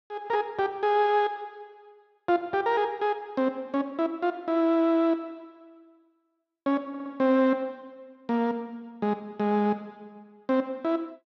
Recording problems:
stutter; at 7 s

